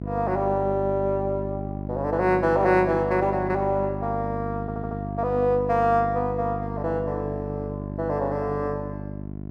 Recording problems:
electrical hum; 50 Hz, harmonics up to 750 Hz, SNR 7 dB
stutter; at 4.5 s

